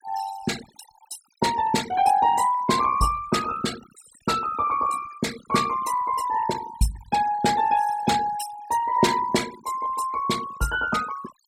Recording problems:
denoising artefacts; signal-to-artefact ratio 14 dB

